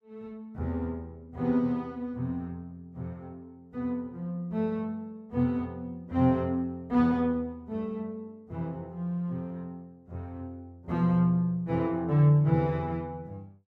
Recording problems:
none

